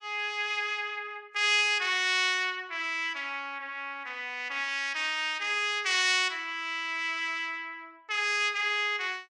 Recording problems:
lossy compression; MP3, log-spectral distance 2 dB, nothing above 10.4 kHz

